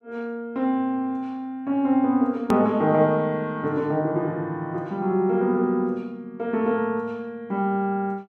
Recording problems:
click at an edit; at 2.5 s

